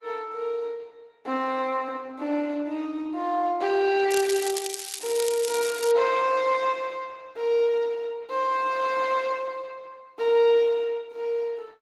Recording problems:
codec artefacts; Opus, log-spectral distance 4 dB
crackling; from 4 to 6 s; loose cable, SNR 6 dB

